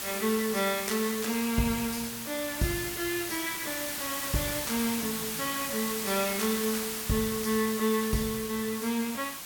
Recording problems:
hiss; slope +1 dB per octave, SNR 3 dB

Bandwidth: 18 kHz